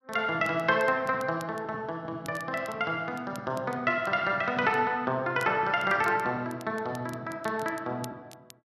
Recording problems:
crackle; vinyl, SNR 24 dB

